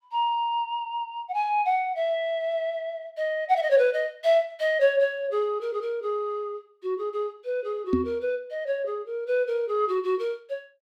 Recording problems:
microphone thump; at 8 s; peak +6 dB vs average level

